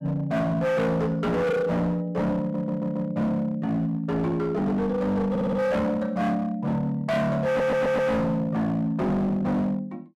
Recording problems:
distortion; hard clipping, signal-to-distortion ratio 7 dB
stutter; at 2.5 s, at 5.5 s and at 7.5 s

